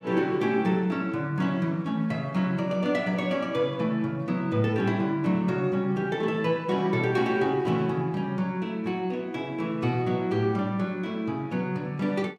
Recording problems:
none

